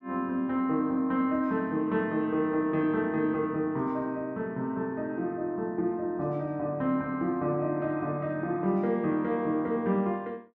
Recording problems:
none

